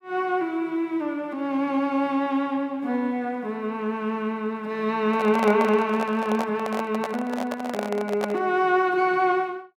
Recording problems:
handling noise; from 5 to 8.5 s; peak 0 dB vs average level

